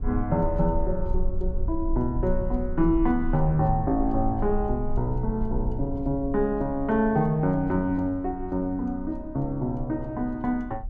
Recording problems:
low-frequency rumble; below 50 Hz, strongest tone 18 Hz, SNR 8 dB

